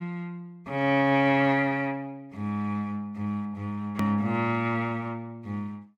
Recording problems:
hard cut with a click; at 4 s

